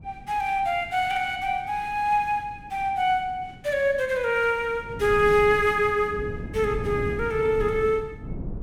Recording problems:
wind noise; below 240 Hz, SNR 14 dB

